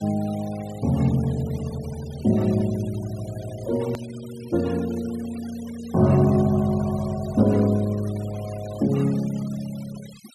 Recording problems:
denoising artefacts; signal-to-artefact ratio 21 dB
hard cut with a click; at 4 s

